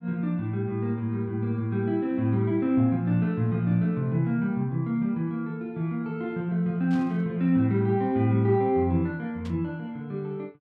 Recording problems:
burst of static; at 7 s and at 9.5 s; peak -16 dB vs average level

